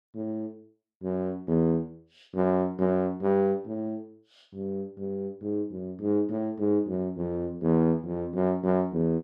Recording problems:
none

